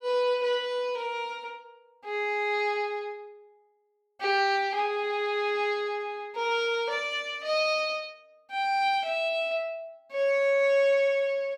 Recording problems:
none

